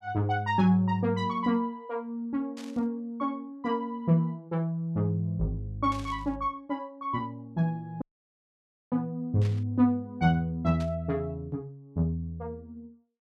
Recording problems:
burst of static; 4 times, first at 2.5 s; peak -12 dB vs average level
dropout; at 8 s for 1 s

